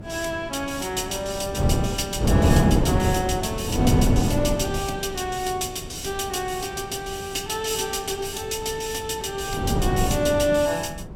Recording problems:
wind noise; below 300 Hz, SNR -2 dB

